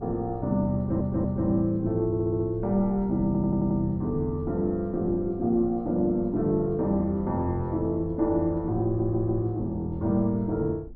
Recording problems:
wind on the microphone; below 150 Hz, SNR 17 dB
audio stuttering; 4 times, first at 1 s

